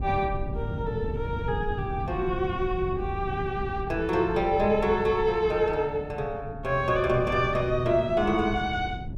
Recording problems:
wind on the microphone; below 160 Hz, SNR 9 dB

